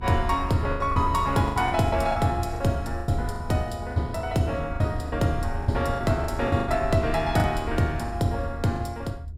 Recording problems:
rumble; below 80 Hz, SNR 9 dB
lost packets; 10% of the sound replaced, filled with the last packet

